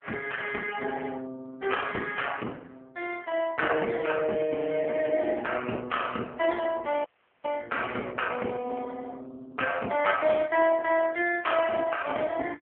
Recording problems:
phone line; 280 Hz to 3.1 kHz, AMR-NB
audio cutting out; at 7 s

